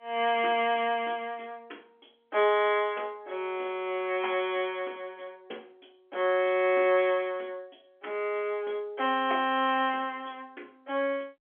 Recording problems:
phone line; 280 Hz to 3.4 kHz, G.711

